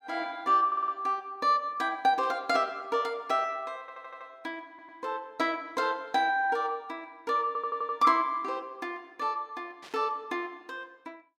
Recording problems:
audio stuttering; 4 times, first at 0.5 s
burst of static; at 2 s and at 10 s; peak -15 dB vs average level

